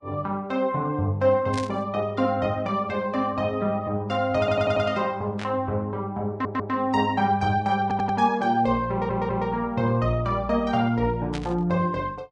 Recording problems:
lossy codec; Vorbis, log-spectral distance 2 dB
burst of static; at 1.5 s, at 5.5 s and at 11 s; peak -6 dB vs average level
audio stuttering; 4 times, first at 4.5 s

